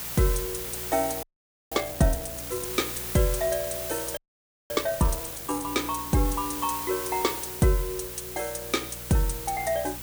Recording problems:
hum; 60 Hz, harmonics up to 960 Hz, SNR 19 dB
hiss; slope -1 dB per octave, SNR 5 dB
audio freezing; at 1 s and at 4 s for 0.5 s

